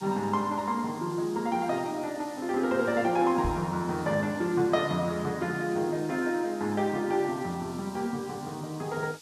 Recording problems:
background hiss; SNR 20 dB
knock on the microphone; at 3.5 s; peak 0 dB vs average level

